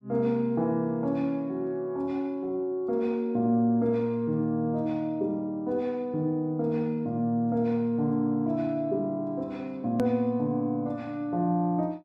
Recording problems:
click at an edit; at 10 s

